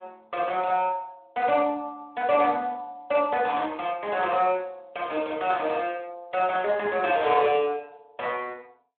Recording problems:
telephone audio; 260 Hz to 3.7 kHz, Speex

